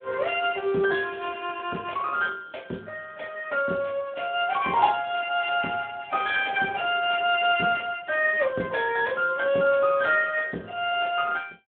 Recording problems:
telephone audio; 220 Hz to 3.7 kHz, Speex

